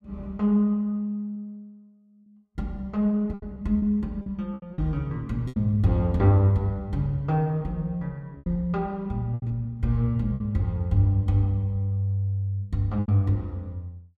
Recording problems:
lost packets; 5% of the sound replaced, filled with repeated pitch periods

